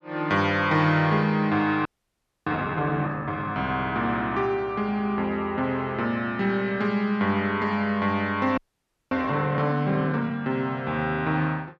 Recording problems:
frozen audio; at 2 s for 0.5 s and at 8.5 s for 0.5 s

